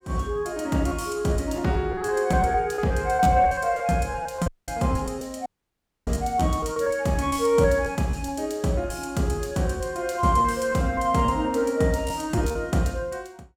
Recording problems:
lost packets; 8% of the sound replaced, filled with repeated pitch periods
dropout; at 4.5 s and at 5.5 s for 0.5 s

